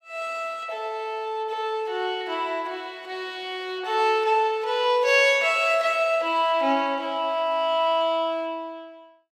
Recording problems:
none

